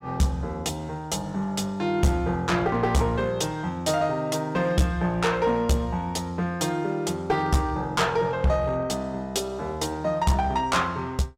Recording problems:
distortion; hard clipping, uneven, signal-to-distortion ratio 11 dB

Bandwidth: 16.5 kHz